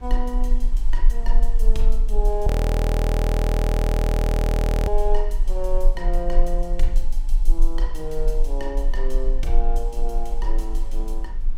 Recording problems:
rumble; below 40 Hz, strongest tone 18 Hz, SNR -6 dB
wind on the microphone; below 160 Hz, SNR 16 dB
frozen audio; at 2.5 s for 2.5 s

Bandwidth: 16 kHz